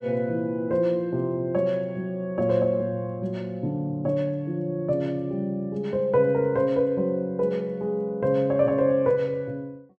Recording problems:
none

